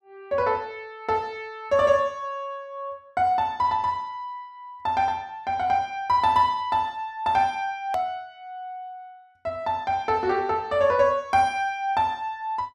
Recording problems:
hard cut with a click; at 8 s

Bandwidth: 14.5 kHz